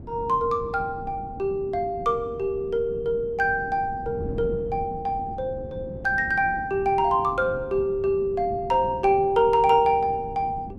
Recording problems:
wind on the microphone; below 270 Hz, SNR 15 dB

